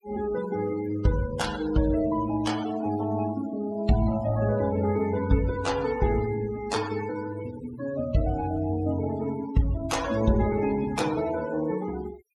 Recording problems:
noise reduction artefacts; signal-to-artefact ratio 15 dB

